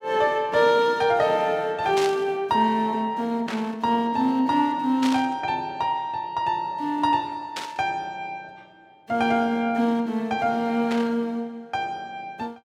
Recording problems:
static burst; 5 times, first at 2 s; peak -3 dB vs average level

